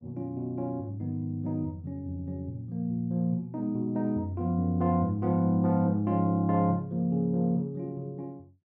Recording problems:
none

